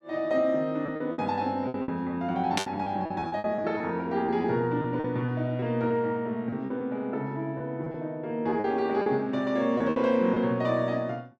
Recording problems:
lost packets; 9% of the sound replaced, filled with repeated pitch periods
static burst; at 2.5 s; peak +4 dB vs average level

